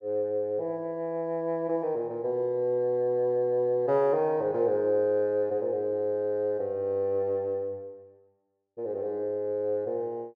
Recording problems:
none

